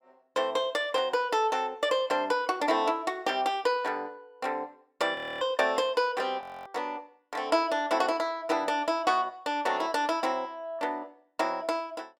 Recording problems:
audio freezing; at 5 s and at 6.5 s

